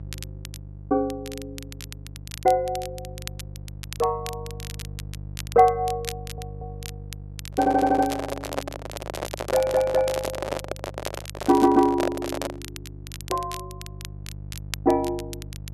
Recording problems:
hum; 50 Hz, harmonics up to 500 Hz, SNR 16 dB
crackle; vinyl, SNR 17 dB
stutter; 4 times, first at 6 s
handling noise; from 7.5 to 13 s; peak 0 dB vs average level

